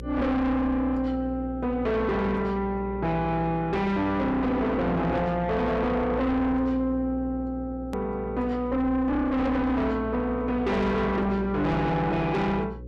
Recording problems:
distorted audio; soft clipping, signal-to-distortion ratio 6 dB
hum; 60 Hz, harmonics up to 540 Hz, SNR 13 dB
hard cut with a click; at 8 s

